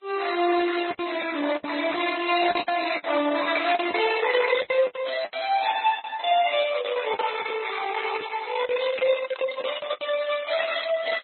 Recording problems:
lossy codec; Opus, then MP3, log-spectral distance 6 dB, nothing above 4 kHz
packet loss; 10% of the sound replaced, filled with the last packet
static burst; 4 times, first at 2.5 s; peak -13 dB vs average level

